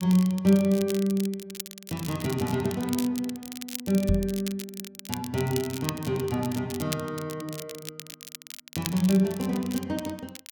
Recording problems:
crackling; vinyl, SNR 12 dB
microphone thump; at 4 s; peak +6 dB vs average level

